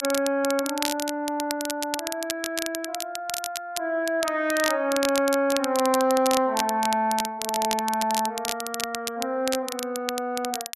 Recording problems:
crackle; vinyl, SNR 6 dB

